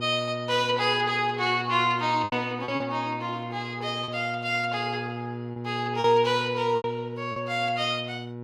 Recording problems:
hum; 60 Hz, harmonics up to 960 Hz, SNR 10 dB
lost packets; 5% of the sound replaced, filled with repeated pitch periods

